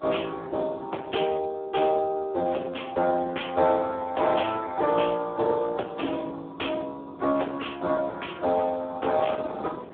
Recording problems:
telephone audio; 280 Hz to 3.4 kHz, Speex
distortion; soft clipping, signal-to-distortion ratio 13 dB
wind noise; below 800 Hz, SNR 20 dB

